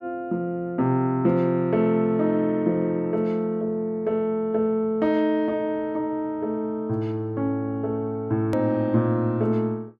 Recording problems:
click at an edit; at 8.5 s

